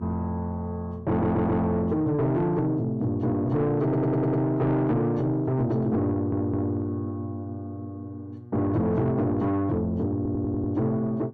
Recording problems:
distortion; soft clipping, signal-to-distortion ratio 11 dB
hum; 60 Hz, harmonics up to 720 Hz, SNR 20 dB
stutter; 4 times, first at 1 s

